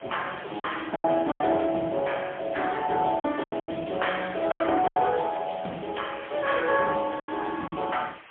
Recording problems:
telephone audio; 260 Hz to 3.3 kHz, AMR-NB, then MP3
background hiss; SNR 21 dB
packet loss; 8% of the sound replaced, filled with silence

